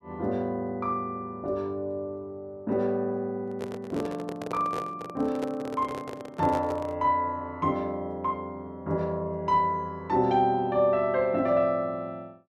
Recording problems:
handling noise; from 3.5 to 7 s; peak -3 dB vs average level

